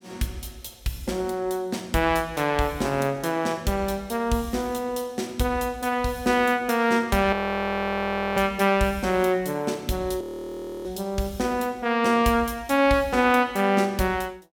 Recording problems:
audio freezing; at 7.5 s for 1 s and at 10 s for 0.5 s

